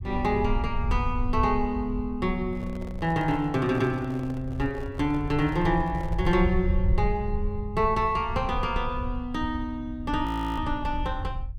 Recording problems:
low-frequency rumble; below 82 Hz, SNR 6 dB
microphone handling noise; from 2.5 to 6.5 s; peak -12 dB vs average level
frozen audio; at 10 s

